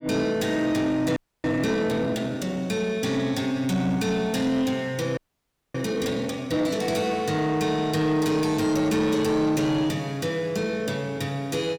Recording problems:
distortion; soft clipping, signal-to-distortion ratio 12 dB
audio freezing; at 1 s and at 5 s for 0.5 s

